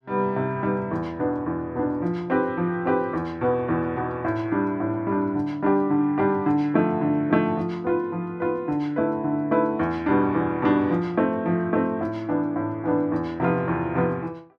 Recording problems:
none

